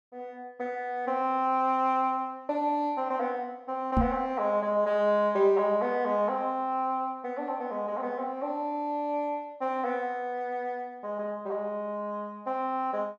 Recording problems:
knock on the microphone; at 4 s; peak +7 dB vs average level

